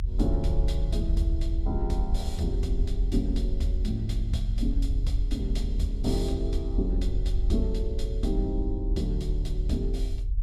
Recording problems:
rumble; below 54 Hz, strongest tone 40 Hz, SNR -2 dB

